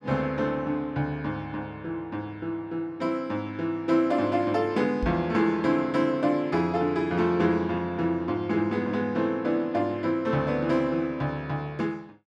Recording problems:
knock on the microphone; at 5 s; peak -2 dB vs average level

